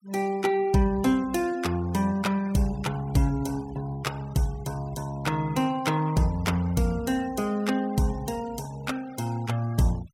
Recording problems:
denoising artefacts; signal-to-artefact ratio 21 dB

